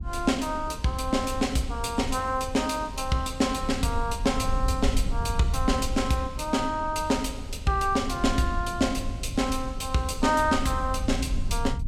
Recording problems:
low-frequency rumble; below 76 Hz, SNR 8 dB

